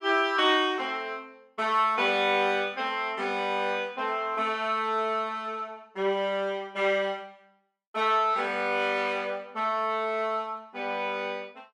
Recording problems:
none

